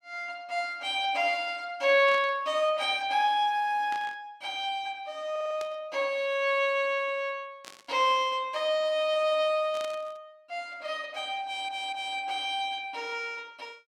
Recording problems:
static burst; 5 times, first at 2 s; peak -10 dB vs average level
audio stuttering; at 5.5 s and at 11 s

